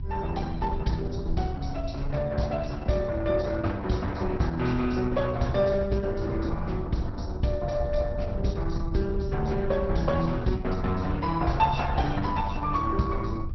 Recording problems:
treble missing; nothing above 5.8 kHz
codec artefacts; Opus, log-spectral distance 3 dB
low-frequency rumble; below 84 Hz, SNR 7 dB

